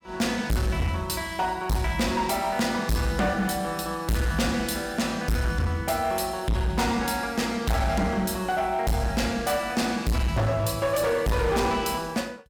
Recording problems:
distortion; hard clipping, signal-to-distortion ratio 6 dB

